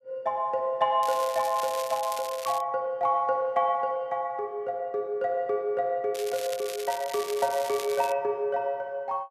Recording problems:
crackling; from 1 to 2.5 s and from 6 to 8 s; loose cable, SNR 12 dB

